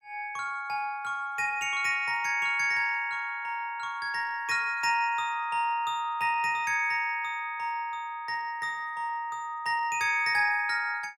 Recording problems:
none

